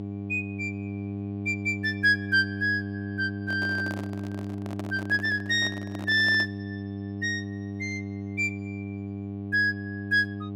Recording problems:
hum; 50 Hz, harmonics up to 800 Hz, SNR 8 dB
microphone handling noise; from 3.5 to 6.5 s; peak -8 dB vs average level

